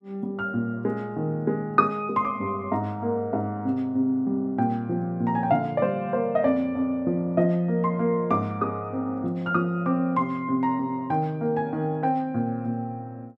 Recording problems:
none

